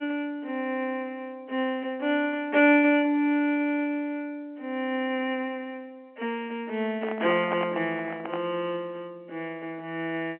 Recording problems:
telephone audio; 280 Hz to 3.2 kHz, G.711
microphone handling noise; from 7 to 8.5 s; peak -1 dB vs average level

